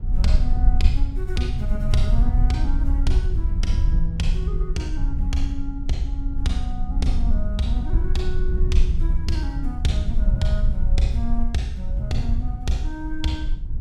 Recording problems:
low-frequency rumble; below 54 Hz, SNR -3 dB

